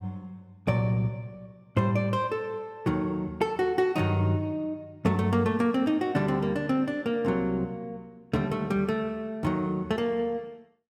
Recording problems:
none

